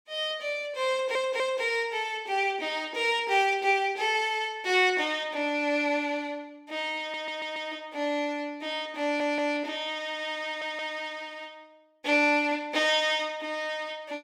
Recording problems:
stutter; 4 times, first at 1 s

